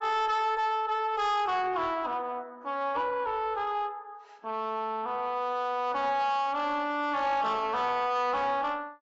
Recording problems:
lossy codec; AAC, log-spectral distance 2 dB, nothing above 7.6 kHz
distortion; soft clipping, signal-to-distortion ratio 10 dB

